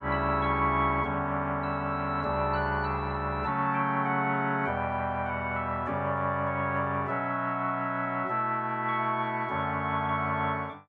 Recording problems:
none

